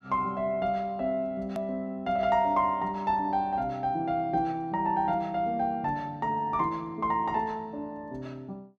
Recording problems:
edit click; at 1.5 s

